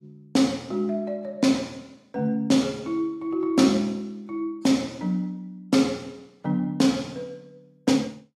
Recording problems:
lossy compression; AAC, log-spectral distance 2 dB, nothing above 14.7 kHz

